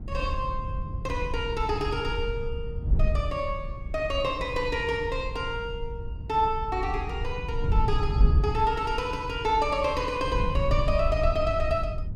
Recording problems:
wind noise; below 80 Hz, SNR 3 dB

